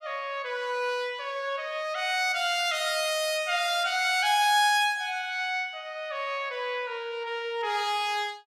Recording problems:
none

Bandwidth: 14.5 kHz